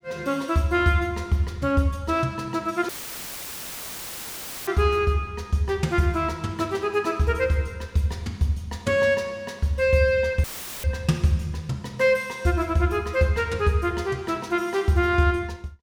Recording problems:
audio cutting out; at 3 s for 2 s and at 10 s; filled with static

